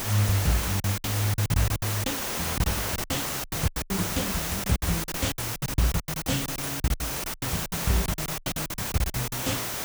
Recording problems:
distorted audio; soft clipping, signal-to-distortion ratio 2 dB
hiss; slope -2 dB per octave, SNR 2 dB
lost packets; 20% of the sound replaced, filled with silence

